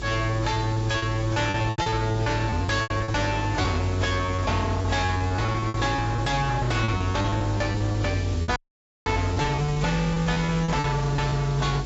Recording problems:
codec artefacts; AAC, log-spectral distance 4 dB, nothing above 7.8 kHz
distorted audio; soft clipping, signal-to-distortion ratio 6 dB
hum; 50 Hz, harmonics up to 450 Hz, SNR 10 dB
background hiss; SNR 16 dB
packet loss; 14% of the sound replaced, filled with repeated pitch periods
dropout; at 8.5 s for 0.5 s

